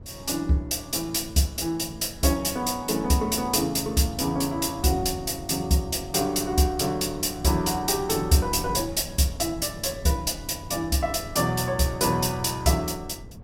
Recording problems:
wind noise; below 190 Hz, SNR 17 dB

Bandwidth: 16 kHz